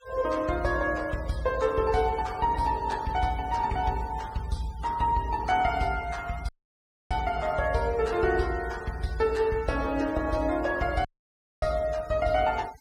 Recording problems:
denoising artefacts; signal-to-artefact ratio 20 dB
audio cutting out; at 6.5 s for 0.5 s and at 11 s for 0.5 s

